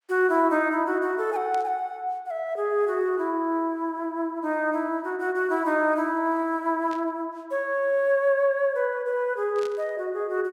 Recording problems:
burst of static; at 1.5 s, at 7 s and at 9.5 s; peak -13 dB vs average level

